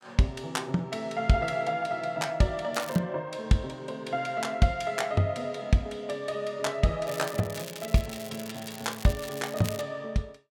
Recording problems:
crackling; at 2.5 s and from 7 to 10 s; loose cable, SNR 13 dB

